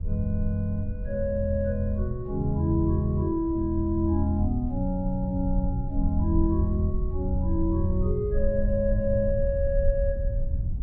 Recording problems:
low-frequency rumble; below 72 Hz, SNR 5 dB

